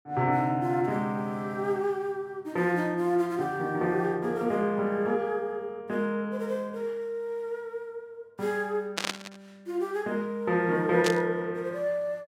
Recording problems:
burst of static; at 9 s and at 11 s; peak +4 dB vs average level

